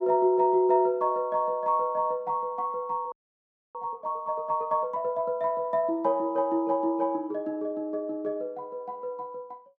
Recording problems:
frozen audio; at 3 s for 0.5 s

